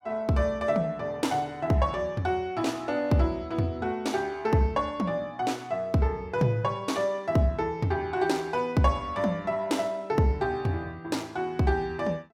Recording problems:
none

